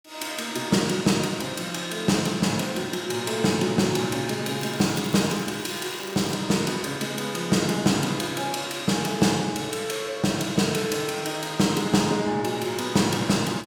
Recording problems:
crackling; from 4.5 to 6.5 s; loose cable, SNR 17 dB

